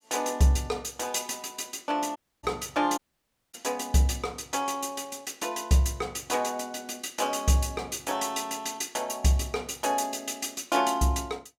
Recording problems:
dropout; at 2 s and at 3 s for 0.5 s

